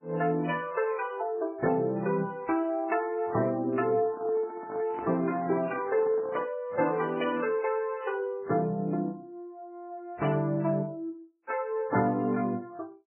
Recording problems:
lossy codec; MP3, then AAC, log-spectral distance 2 dB, nothing above 2.4 kHz
microphone handling noise; from 4 to 6.5 s; peak -7 dB vs average level

